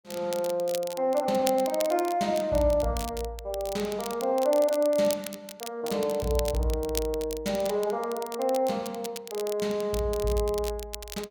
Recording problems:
crackle; vinyl, SNR 13 dB

